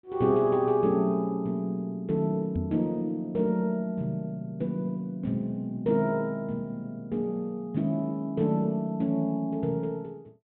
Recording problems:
low-pass filter; nothing above 4 kHz
microphone bump; at 2.5 s; peak +1 dB vs average level

